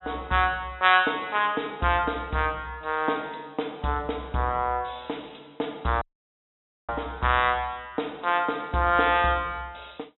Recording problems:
low-pass filter; nothing above 3.9 kHz
dropout; at 6 s for 1 s

